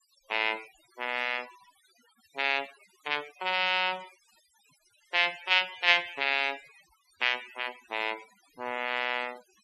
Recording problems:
denoising artefacts; signal-to-artefact ratio 20 dB

